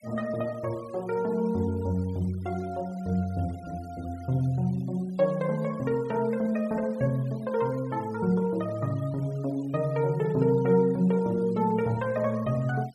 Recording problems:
denoising artefacts; signal-to-artefact ratio 26 dB

